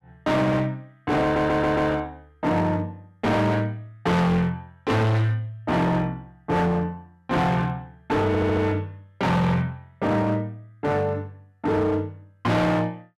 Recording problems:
distortion; hard clipping, signal-to-distortion ratio 6 dB
stutter; at 1 s and at 8.5 s

